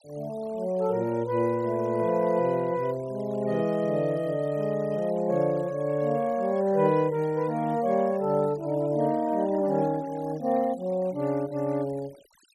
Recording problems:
denoising artefacts; signal-to-artefact ratio 25 dB

